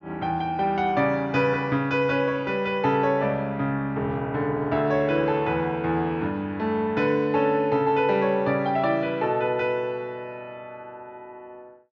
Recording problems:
treble cut off; nothing above 6.9 kHz

